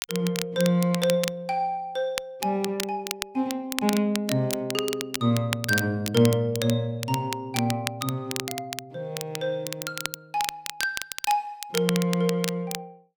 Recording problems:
crackle; vinyl, SNR 7 dB

